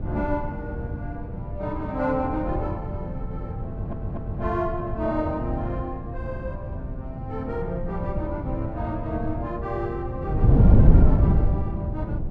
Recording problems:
wind noise; below 150 Hz, SNR -5 dB
audio stuttering; at 3.5 s

